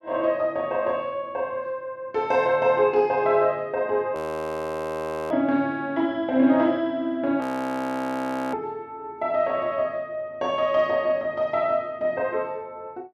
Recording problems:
audio freezing; at 4 s for 1 s and at 7.5 s for 1 s

